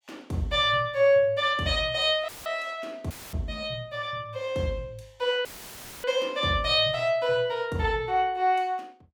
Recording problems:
dropout; at 2.5 s, at 3 s and at 5.5 s for 0.5 s; filled with static

